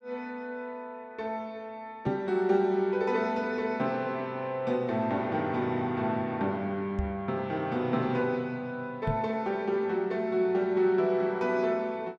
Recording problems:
microphone thump; at 2 s, at 7 s and at 9 s; peak +1 dB vs average level

